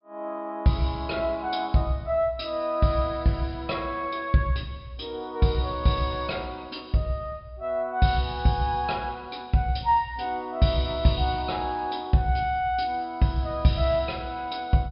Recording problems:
treble missing; nothing above 5.5 kHz

